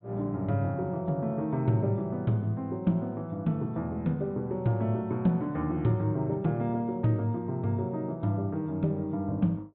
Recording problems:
treble cut off; nothing above 4 kHz

